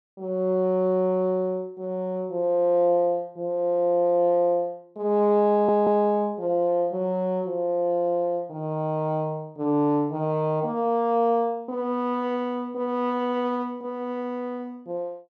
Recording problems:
audio stuttering; at 5.5 s

